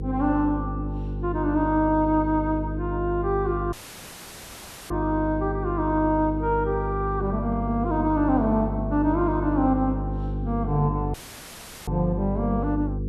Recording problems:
hum; 50 Hz, harmonics up to 500 Hz, SNR 5 dB
dropout; at 3.5 s for 1 s and at 11 s for 0.5 s; filled with static

